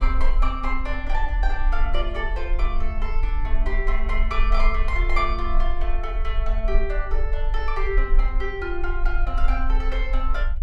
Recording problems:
low-frequency rumble; below 38 Hz, strongest tone 20 Hz, SNR -3 dB

